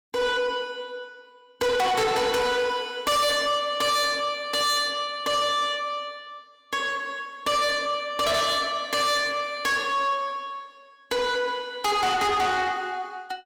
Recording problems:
distorted audio; soft clipping, signal-to-distortion ratio 7 dB

